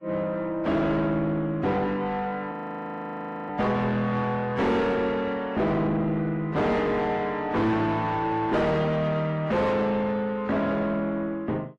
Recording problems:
lossy codec; AAC, log-spectral distance 2 dB, nothing above 11 kHz
distorted audio; soft clipping, signal-to-distortion ratio 6 dB
frozen audio; at 2.5 s for 1 s

